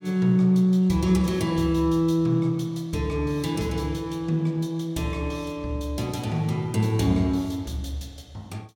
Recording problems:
none

